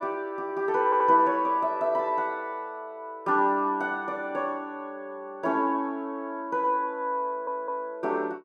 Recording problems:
audio stuttering; at 1 s and at 7.5 s

